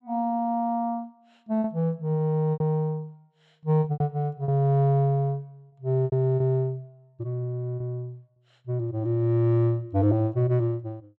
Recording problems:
packet loss; 5% of the sound replaced, filled with repeated pitch periods

